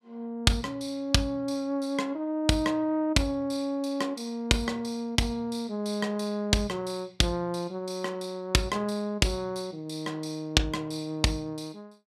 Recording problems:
none

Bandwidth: 14.5 kHz